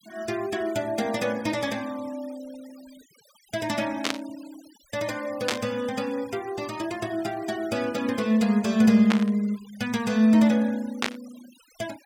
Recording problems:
denoising artefacts; signal-to-artefact ratio 21 dB
burst of static; 4 times, first at 4 s; peak +4 dB vs average level

